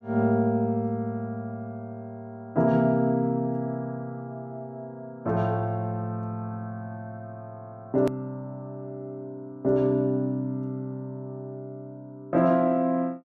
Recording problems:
click at an edit; at 8 s

